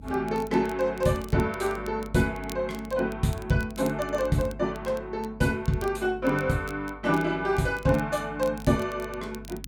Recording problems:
hum; 50 Hz, harmonics up to 300 Hz, SNR 18 dB
crackle; vinyl, SNR 22 dB

